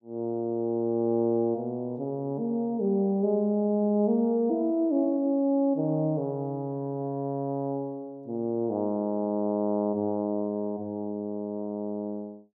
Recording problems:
none

